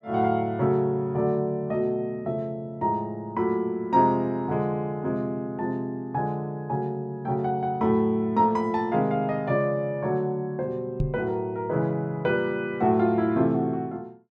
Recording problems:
knock on the microphone; at 11 s; peak +3 dB vs average level

